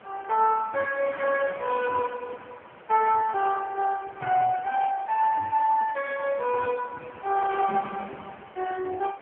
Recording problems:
phone line; 320 Hz to 2.3 kHz, AMR-NB
wind noise; below 1.8 kHz, SNR 19 dB

